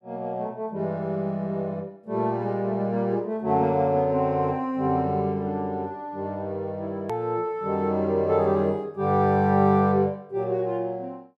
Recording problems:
edit click; at 7 s

